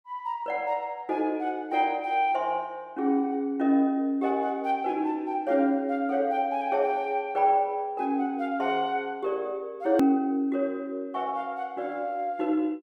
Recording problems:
hard cut with a click; at 10 s

